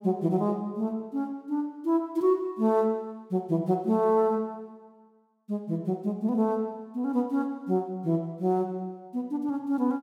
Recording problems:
none

